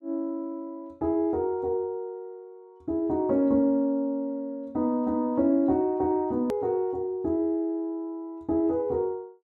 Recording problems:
hard cut with a click; at 6.5 s

